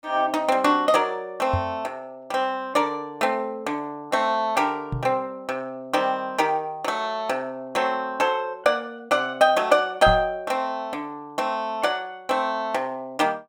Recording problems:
microphone thump; at 1.5 s, at 5 s and at 10 s; peak +1 dB vs average level

